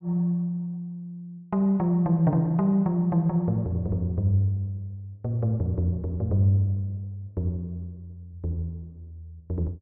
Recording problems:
none

